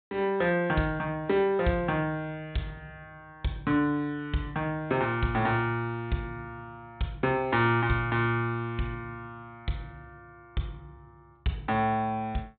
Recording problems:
low-pass filter; nothing above 4 kHz

